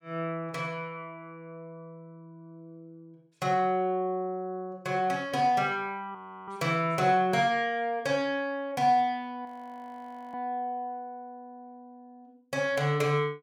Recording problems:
audio freezing; at 6 s and at 9.5 s for 1 s

